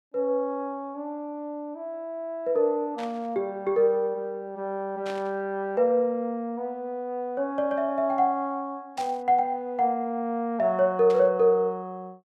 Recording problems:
burst of static; 4 times, first at 3 s; peak -10 dB vs average level

